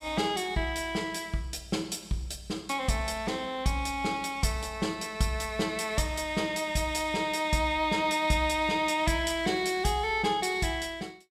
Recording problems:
none

